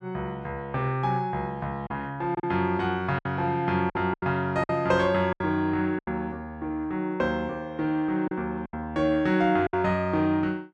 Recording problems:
packet loss; 6% of the sound replaced, filled with silence

